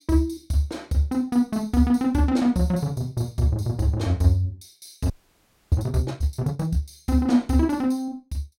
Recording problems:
audio freezing; at 5 s for 0.5 s

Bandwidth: 16 kHz